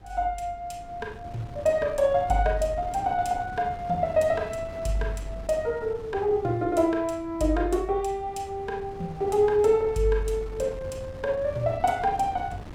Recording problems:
wind noise; below 370 Hz, SNR 16 dB

